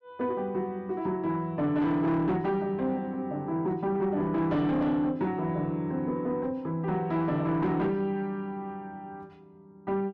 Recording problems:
distortion; soft clipping, signal-to-distortion ratio 12 dB

